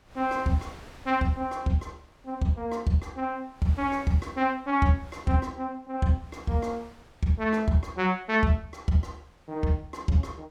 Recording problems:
wind on the microphone; below 1.5 kHz, SNR 25 dB

